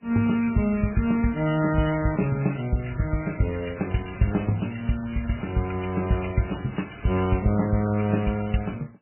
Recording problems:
codec artefacts; MP3, then MP3, log-spectral distance 7 dB, nothing above 3 kHz
crackle; from 2.5 to 5.5 s and from 6.5 to 7.5 s; loose cable, SNR 25 dB

